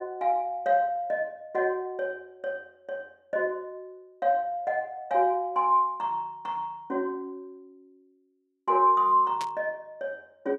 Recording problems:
burst of static; at 9.5 s; peak -7 dB vs average level

